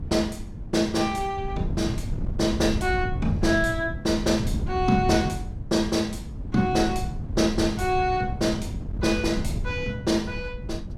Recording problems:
wind on the microphone; below 140 Hz, SNR 7 dB

